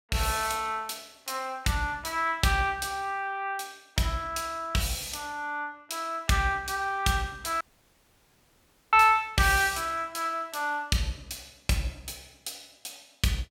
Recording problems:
audio cutting out; at 7.5 s for 1.5 s

